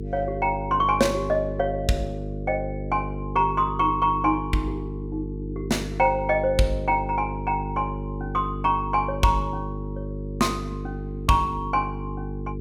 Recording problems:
hum; 50 Hz, harmonics up to 450 Hz, SNR 7 dB

